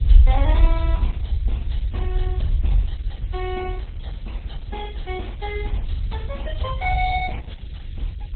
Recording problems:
lossy compression; MP3, then Opus, log-spectral distance 2 dB, nothing above 3.8 kHz
hum; 50 Hz, harmonics up to 600 Hz, SNR 23 dB
hiss; SNR 24 dB
rumble; below 66 Hz, SNR -4 dB

